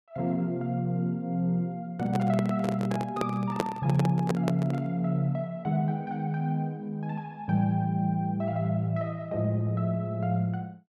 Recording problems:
handling noise; from 2 to 5 s; peak +4 dB vs average level

